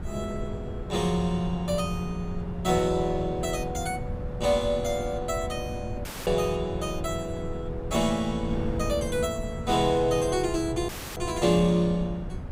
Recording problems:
wind on the microphone; below 160 Hz, SNR 9 dB
dropout; at 6 s and at 11 s

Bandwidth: 15.5 kHz